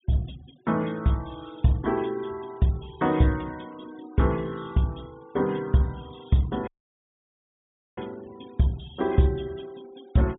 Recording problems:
low-pass filter; nothing above 4 kHz
denoising artefacts; signal-to-artefact ratio 27 dB
audio cutting out; at 6.5 s for 1.5 s

